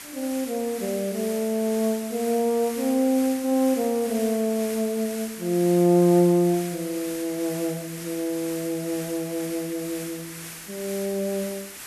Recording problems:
background hiss; SNR 12 dB

